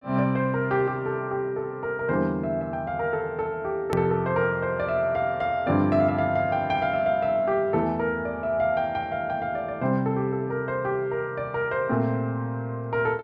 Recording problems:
edit click; at 4 s

